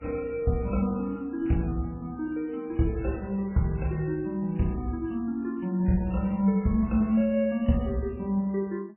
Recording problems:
codec artefacts; MP3, log-spectral distance 2 dB, nothing above 2.9 kHz

